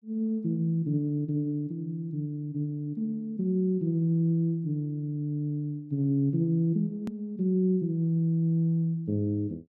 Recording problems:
edit click; at 7 s

